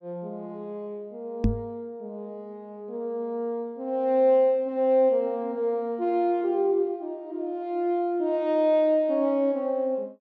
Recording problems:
microphone thump; at 1.5 s; peak +6 dB vs average level

